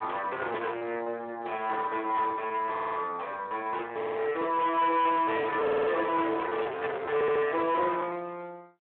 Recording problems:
telephone audio; 280 Hz to 3.3 kHz, Speex
distorted audio; soft clipping, signal-to-distortion ratio 7 dB
lost packets; 8% of the sound replaced, filled with repeated pitch periods
stutter; 4 times, first at 2.5 s

